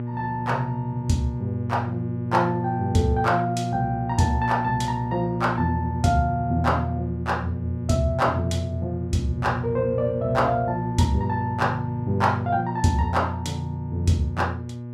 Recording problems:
electrical hum; 60 Hz, harmonics up to 840 Hz, SNR 6 dB

